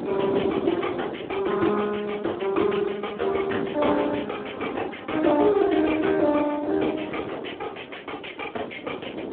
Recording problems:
telephone audio; 260 Hz to 3.5 kHz, Speex
wind on the microphone; below 550 Hz, SNR 10 dB

